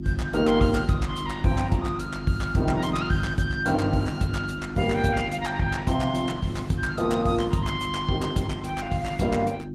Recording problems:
lossy compression; Opus, log-spectral distance 3 dB, nothing above 17.7 kHz
hum; 50 Hz, harmonics up to 350 Hz, SNR 8 dB

